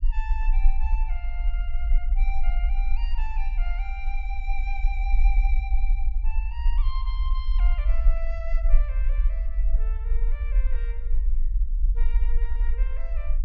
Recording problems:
treble cut off; nothing above 7 kHz
low-frequency rumble; below 42 Hz, strongest tone 20 Hz, SNR -14 dB

